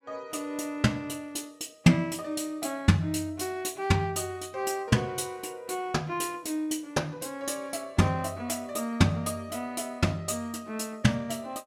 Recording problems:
none

